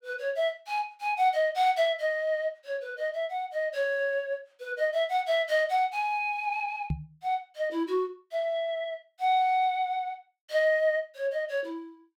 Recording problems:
knock on the microphone; at 7 s; peak +2 dB vs average level

